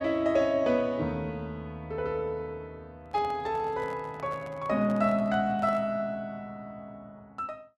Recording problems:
microphone handling noise; from 3 to 6 s; peak -10 dB vs average level

